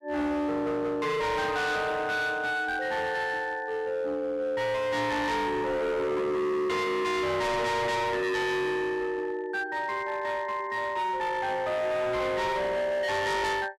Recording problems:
distortion; hard clipping, signal-to-distortion ratio 7 dB

